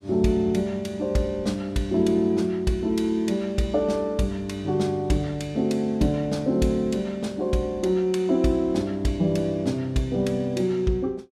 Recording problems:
none

